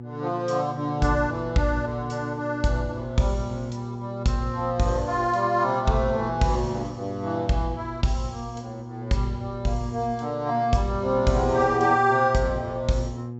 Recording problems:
treble cut off; nothing above 7.7 kHz
hum; 60 Hz, harmonics up to 840 Hz, SNR 10 dB

